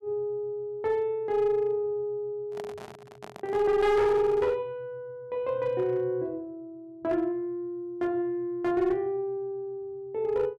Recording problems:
distorted audio; hard clipping, uneven, signal-to-distortion ratio 12 dB
microphone handling noise; from 2.5 to 4.5 s; peak -9 dB vs average level

